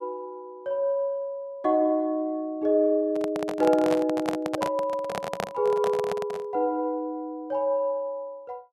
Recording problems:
microphone handling noise; from 3 to 6.5 s; peak +1 dB vs average level

